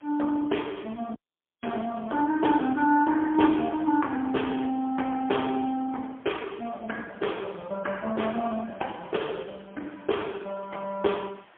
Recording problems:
telephone audio; 240 Hz to 3.4 kHz, AMR-NB, then MP3
hiss; SNR 29 dB
audio cutting out; at 1 s

